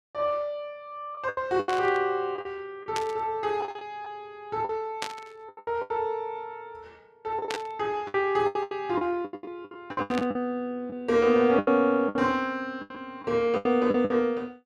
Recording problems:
lost packets; 13% of the sound replaced, filled with the last packet
burst of static; 5 times, first at 1.5 s; peak 0 dB vs average level

